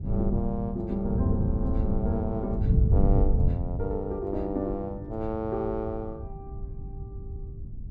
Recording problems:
wind on the microphone; below 110 Hz, SNR -1 dB

